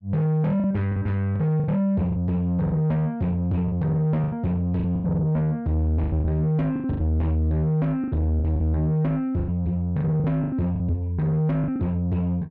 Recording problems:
distorted audio; soft clipping, signal-to-distortion ratio 7 dB
lost packets; 11% of the sound replaced, filled with the last packet

